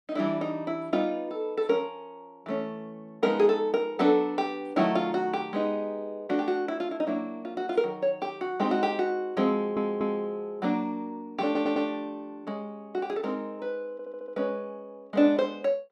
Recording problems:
stutter; at 9.5 s, at 11 s and at 14 s

